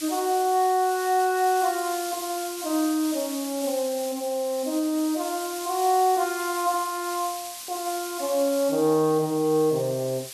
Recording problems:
background hiss; SNR 10 dB

